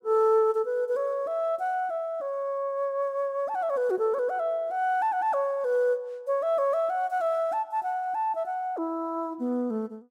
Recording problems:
none

